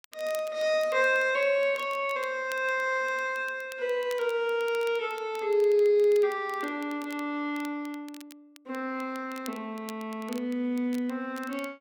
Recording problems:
crackling; vinyl, SNR 22 dB

